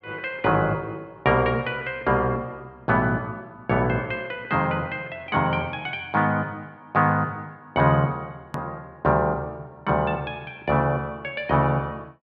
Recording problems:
hard cut with a click; at 8.5 s

